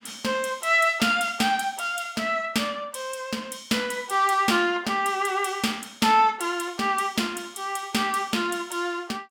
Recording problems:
none

